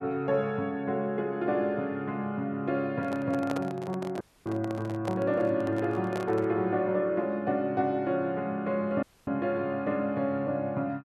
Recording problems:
microphone handling noise; from 3 to 6.5 s; peak -1 dB vs average level
dropout; at 4 s and at 9 s

